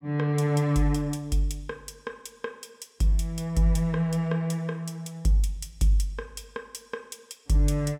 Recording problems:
none

